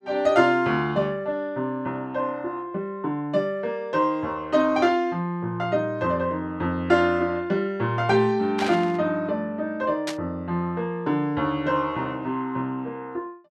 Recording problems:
burst of static; at 8.5 s and at 10 s; peak -2 dB vs average level

